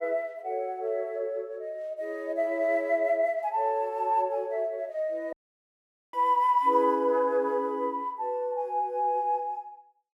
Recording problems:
audio cutting out; at 5.5 s for 1 s

